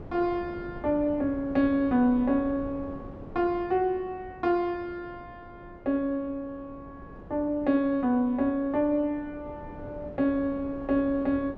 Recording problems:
wind noise; below 440 Hz, SNR 17 dB

